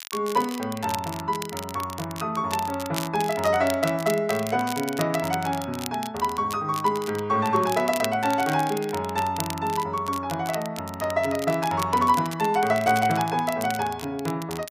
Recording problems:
crackling; vinyl, SNR 12 dB

